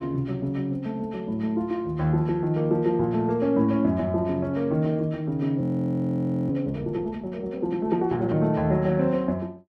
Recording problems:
audio freezing; at 5.5 s for 1 s

